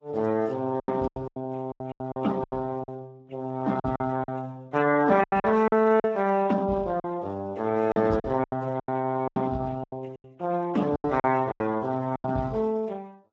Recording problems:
lossy compression; MP3, then Speex, log-spectral distance 5 dB
lost packets; 13% of the sound replaced, filled with silence

